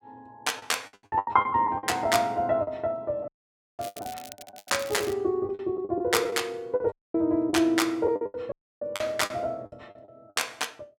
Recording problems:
lost packets; 13% of the sound replaced, filled with the last packet
audio cutting out; at 3.5 s for 0.5 s, at 7 s and at 8.5 s
crackling; from 4 to 5 s; loose cable, SNR 16 dB

